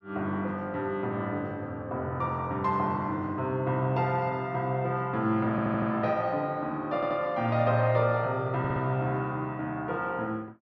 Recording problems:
stutter; at 5.5 s, at 7 s and at 8.5 s

